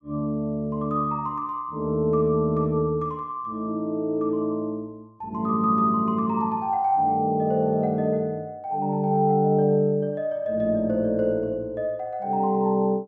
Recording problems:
none

